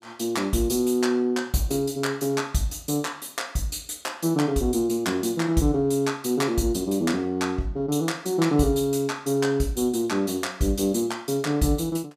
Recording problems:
none

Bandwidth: 15.5 kHz